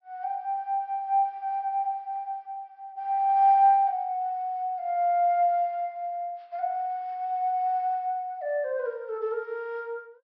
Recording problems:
low-pass filter; nothing above 5.5 kHz

